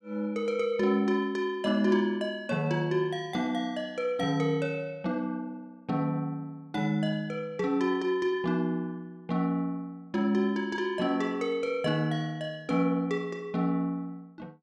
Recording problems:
none

